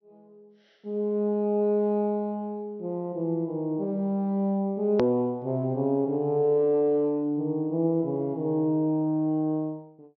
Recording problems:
treble cut off; nothing above 6 kHz
hard cut with a click; at 5 s

